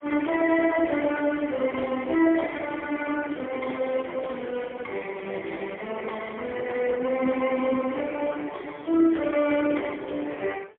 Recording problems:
telephone audio; 240 Hz to 3.3 kHz, AMR-NB, then MP3

